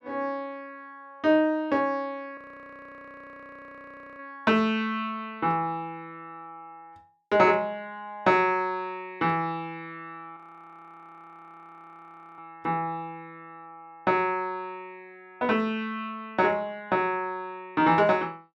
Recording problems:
audio freezing; at 2.5 s for 2 s and at 10 s for 2 s

